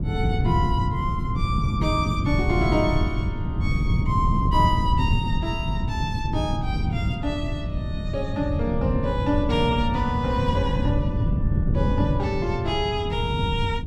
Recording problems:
wind noise; below 160 Hz, SNR -1 dB

